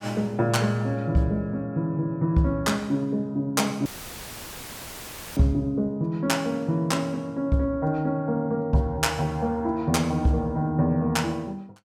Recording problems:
audio cutting out; at 4 s for 1.5 s; filled with static

